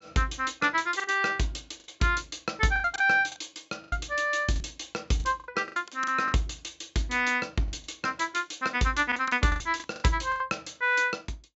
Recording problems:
treble missing; nothing above 8 kHz
lost packets; 10% of the sound replaced, filled with the last packet

